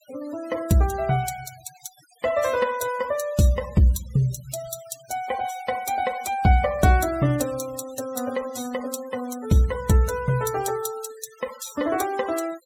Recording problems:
noise reduction artefacts; signal-to-artefact ratio 18 dB

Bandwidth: 16.5 kHz